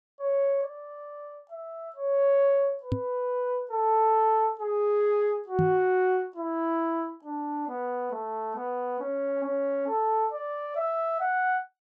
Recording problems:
knock on the microphone; at 3 s and at 5.5 s; peak +3 dB vs average level

